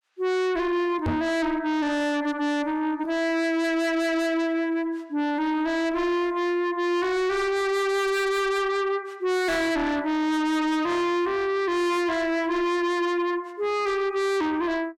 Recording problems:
distorted audio; soft clipping, signal-to-distortion ratio 7 dB
knock on the microphone; at 1 s; peak +1 dB vs average level

